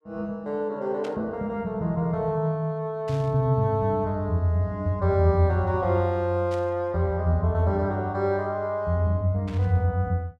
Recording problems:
burst of static; 4 times, first at 1 s; peak -13 dB vs average level

